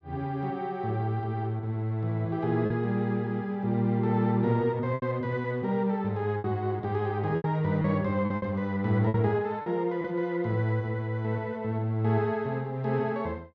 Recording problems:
lost packets; 4% of the sound replaced, filled with repeated pitch periods

